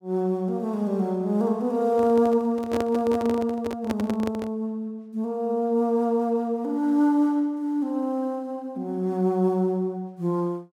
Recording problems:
handling noise; from 2 to 4.5 s; peak -2 dB vs average level

